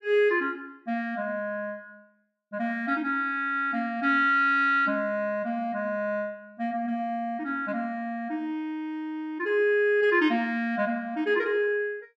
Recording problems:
none

